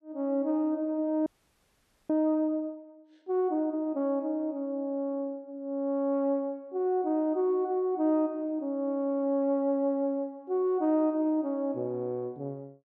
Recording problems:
audio freezing; at 1.5 s for 1 s

